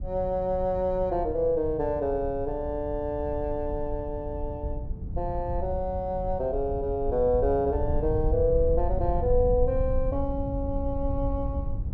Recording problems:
rumble; below 86 Hz, SNR 6 dB

